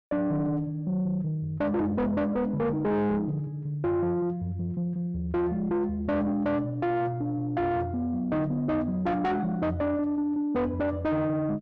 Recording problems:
distorted audio; soft clipping, signal-to-distortion ratio 7 dB

